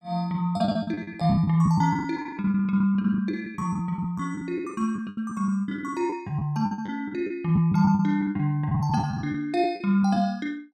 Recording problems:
packet loss; 16% of the sound replaced, filled with the last packet

